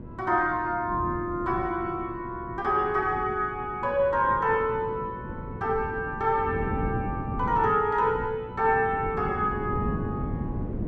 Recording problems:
electrical hum; 60 Hz, harmonics up to 1.6 kHz, SNR 22 dB
wind on the microphone; below 270 Hz, SNR 9 dB

